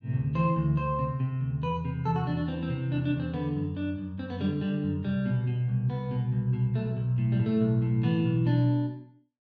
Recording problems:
none

